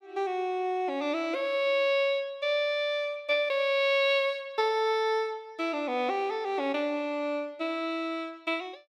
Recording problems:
none

